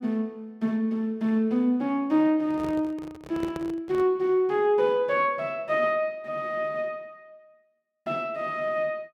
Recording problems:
handling noise; from 2.5 to 4 s; peak -5 dB vs average level

